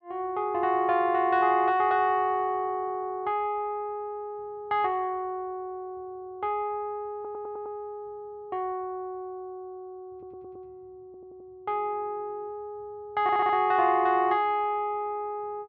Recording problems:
stutter; 4 times, first at 7 s

